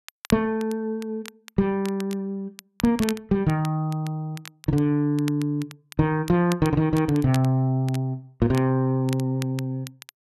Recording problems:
crackle; vinyl, SNR 18 dB

